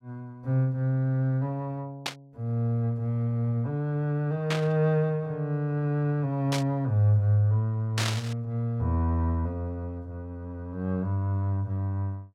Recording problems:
burst of static; 4 times, first at 2 s; peak +1 dB vs average level

